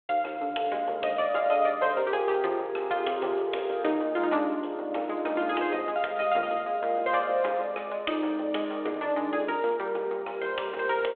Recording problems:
telephone audio; 320 Hz to 3.5 kHz, G.726

